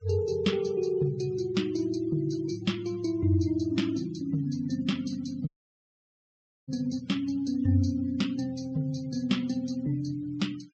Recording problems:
treble cut off; nothing above 8 kHz
denoising artefacts; signal-to-artefact ratio 24 dB
dropout; at 5.5 s for 1 s

